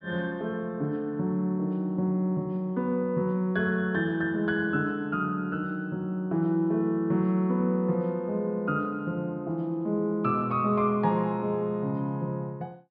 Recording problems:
treble cut off; nothing above 5.5 kHz

